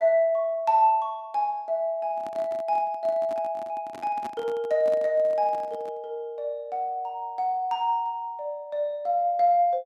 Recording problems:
handling noise; from 2 to 6 s; peak -9 dB vs average level

